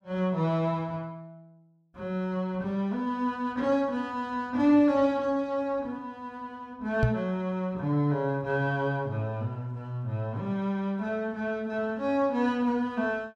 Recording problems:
microphone bump; at 7 s; peak +7 dB vs average level

